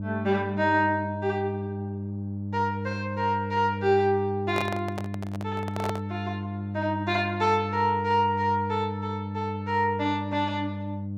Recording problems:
hum; 50 Hz, harmonics up to 600 Hz, SNR 6 dB
handling noise; from 4.5 to 6 s; peak -1 dB vs average level

